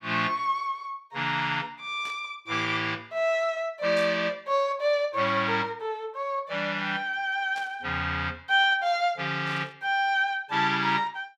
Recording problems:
static burst; 4 times, first at 2 s; peak -11 dB vs average level

